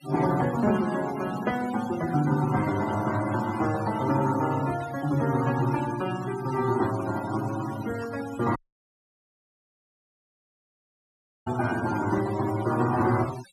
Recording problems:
noise reduction artefacts; signal-to-artefact ratio 14 dB
knock on the microphone; at 8.5 s; peak -13 dB vs average level
dropout; at 8.5 s for 3 s

